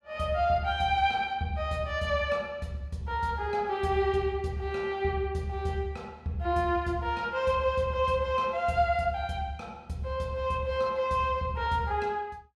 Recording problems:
none

